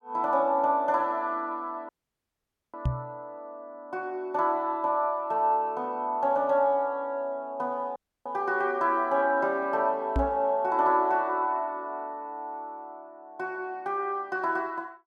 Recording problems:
dropout; at 2 s for 1 s and at 8 s
knock on the microphone; at 3 s and at 10 s; peak +4 dB vs average level

